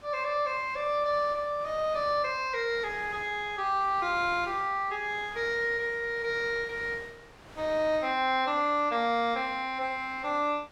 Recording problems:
wind on the microphone; below 2.2 kHz, SNR 21 dB

